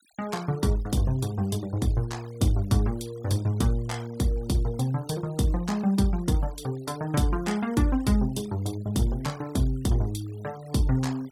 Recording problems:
denoising artefacts; signal-to-artefact ratio 23 dB

